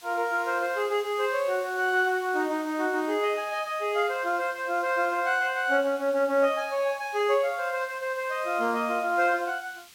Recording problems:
hiss; SNR 22 dB

